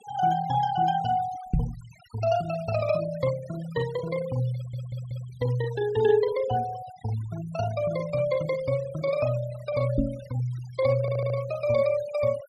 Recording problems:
noise reduction artefacts; signal-to-artefact ratio 19 dB
microphone thump; at 1.5 s and at 10 s; peak +5 dB vs average level
stutter; at 4.5 s and at 11 s

